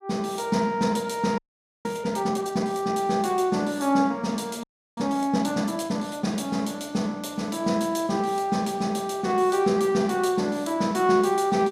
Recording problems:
audio freezing; at 1.5 s and at 4.5 s

